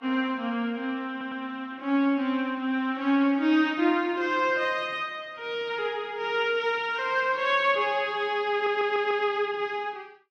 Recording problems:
lossy compression; Vorbis, log-spectral distance 2 dB
audio stuttering; at 1 s and at 8.5 s

